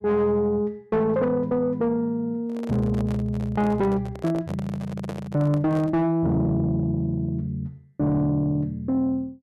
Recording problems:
distorted audio; soft clipping, signal-to-distortion ratio 10 dB
handling noise; from 2.5 to 6 s; peak -5 dB vs average level

